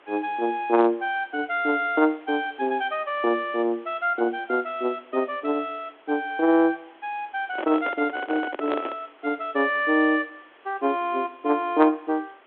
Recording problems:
phone line; 260 Hz to 3.5 kHz, G.726
hiss; SNR 28 dB
handling noise; from 7.5 to 9 s; peak -1 dB vs average level

